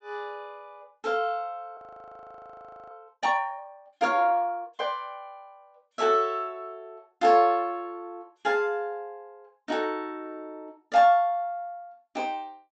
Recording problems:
treble cut off; nothing above 8 kHz
audio freezing; at 2 s for 1 s

